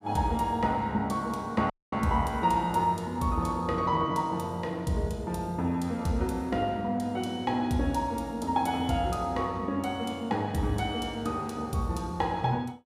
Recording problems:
audio cutting out; at 1.5 s

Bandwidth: 15 kHz